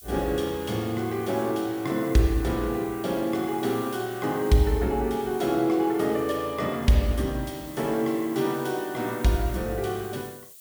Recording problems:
hiss; slope +5 dB per octave, SNR 18 dB

